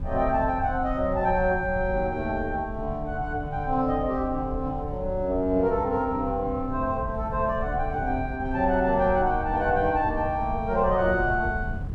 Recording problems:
wind on the microphone; below 110 Hz, SNR 10 dB

